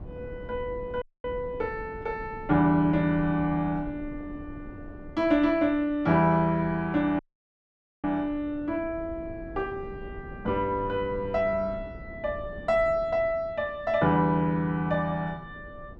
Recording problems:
wind noise; below 270 Hz, SNR 17 dB
dropout; at 1 s and at 7 s for 1 s

